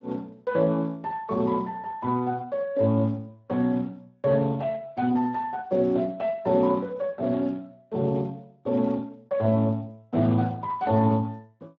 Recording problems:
codec artefacts; Speex, log-spectral distance 2 dB

